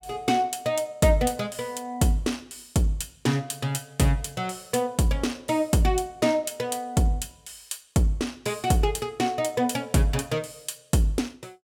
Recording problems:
none

